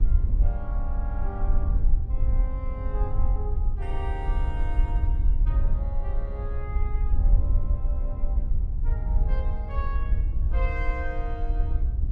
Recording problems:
wind on the microphone; below 60 Hz, SNR -12 dB

